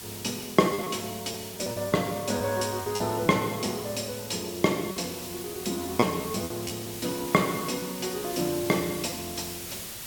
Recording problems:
hiss; slope 0 dB per octave, SNR 9 dB
packet loss; 7% of the sound replaced, filled with repeated pitch periods

